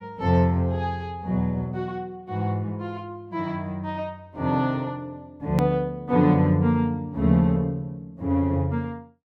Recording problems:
hard cut with a click; at 5.5 s

